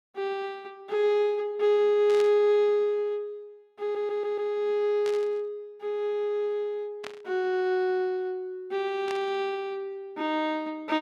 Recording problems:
static burst; 4 times, first at 2 s; peak -8 dB vs average level
audio stuttering; at 4 s

